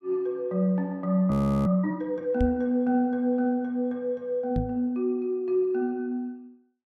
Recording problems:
frozen audio; at 1.5 s
microphone thump; at 2.5 s and at 4.5 s; peak +1 dB vs average level

